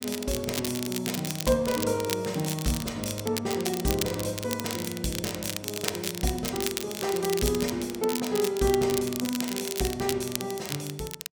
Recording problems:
crackle; vinyl, SNR 5 dB

